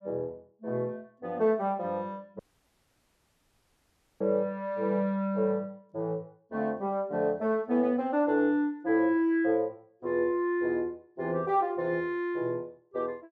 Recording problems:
dropout; at 2.5 s for 2 s

